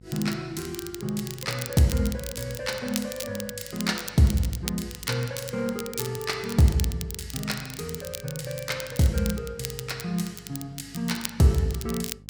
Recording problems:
electrical hum; 50 Hz, harmonics up to 550 Hz, SNR 23 dB
crackling; vinyl, SNR 10 dB

